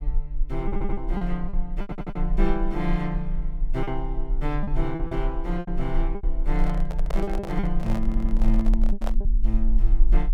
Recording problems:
low-frequency rumble; below 36 Hz, strongest tone 24 Hz, SNR -2 dB
packet loss; 8% of the sound replaced, filled with repeated pitch periods
stutter; at 0.5 s, at 2 s and at 8 s
handling noise; from 6.5 to 9 s; peak 0 dB vs average level

